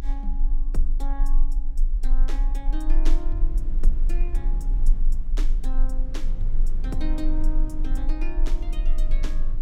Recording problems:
low-frequency rumble; below 30 Hz, strongest tone 22 Hz, SNR -11 dB
wind on the microphone; below 140 Hz, SNR 3 dB

